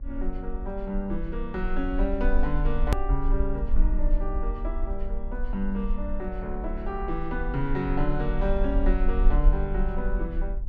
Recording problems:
hum; 60 Hz, harmonics up to 840 Hz, SNR 20 dB
low-frequency rumble; below 42 Hz, strongest tone 20 Hz, SNR -1 dB
hard cut with a click; at 3 s

